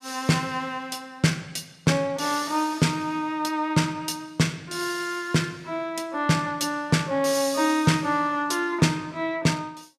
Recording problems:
none

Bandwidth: 15 kHz